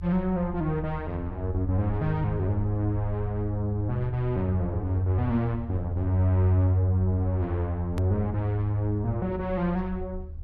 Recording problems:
rumble; below 78 Hz, SNR 12 dB
click at an edit; at 8 s

